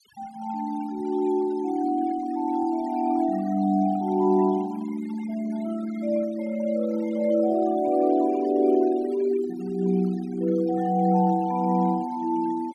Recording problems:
noise reduction artefacts; signal-to-artefact ratio 22 dB

